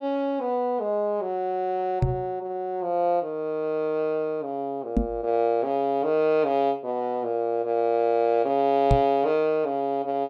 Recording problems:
microphone bump; at 2 s, at 5 s and at 9 s; peak +6 dB vs average level

